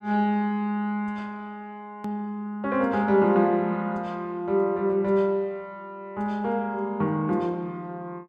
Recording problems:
hard cut with a click; at 2 s

